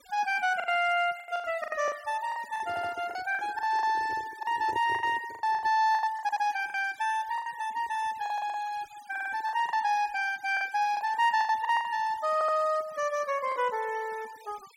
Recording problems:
noise reduction artefacts; signal-to-artefact ratio 22 dB
lost packets; 12% of the sound replaced, filled with the last packet
handling noise; from 2.5 to 5.5 s; peak -8 dB vs average level
stutter; 4 times, first at 2.5 s

